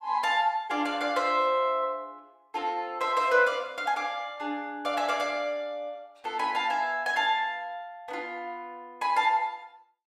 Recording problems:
none

